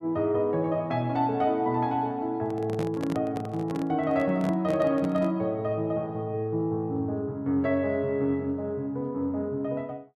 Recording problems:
handling noise; from 2.5 to 5.5 s; peak -4 dB vs average level

